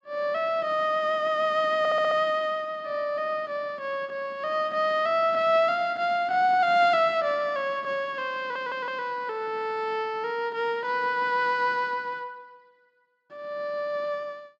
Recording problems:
stutter; at 2 s and at 8.5 s

